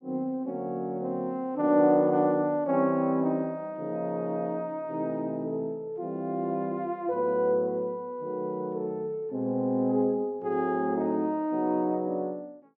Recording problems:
none

